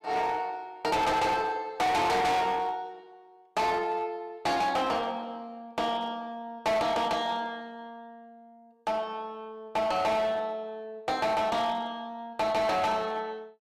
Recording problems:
distorted audio; hard clipping, uneven, signal-to-distortion ratio 6 dB

